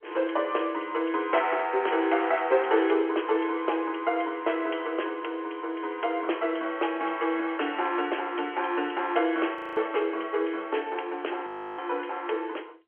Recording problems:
telephone audio; 300 Hz to 3.3 kHz, G.711
frozen audio; at 9.5 s and at 11 s

